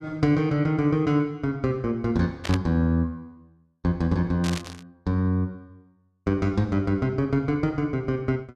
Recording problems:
static burst; at 2.5 s and at 4.5 s; peak -3 dB vs average level

